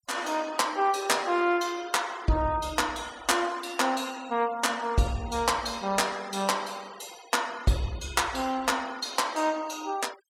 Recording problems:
noise reduction artefacts; signal-to-artefact ratio 20 dB

